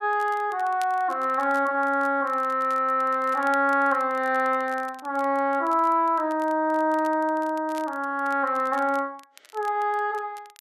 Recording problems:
crackle; vinyl, SNR 27 dB

